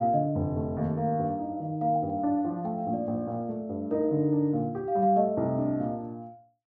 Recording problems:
treble cut off; nothing above 7.5 kHz

